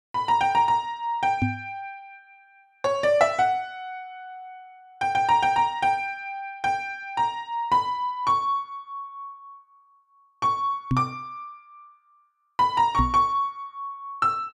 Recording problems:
microphone bump; at 1.5 s, at 11 s and at 13 s; peak +4 dB vs average level

